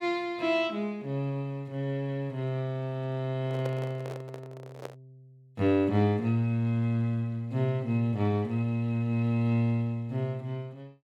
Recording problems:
handling noise; from 3.5 to 5 s; peak -5 dB vs average level

